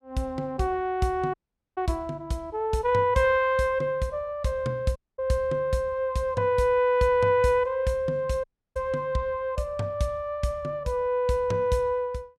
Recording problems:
dropout; at 1.5 s, at 5 s and at 8.5 s

